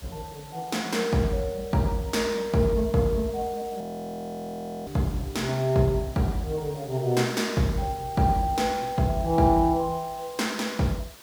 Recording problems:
background hiss; slope -1 dB per octave, SNR 20 dB
audio freezing; at 4 s for 1 s

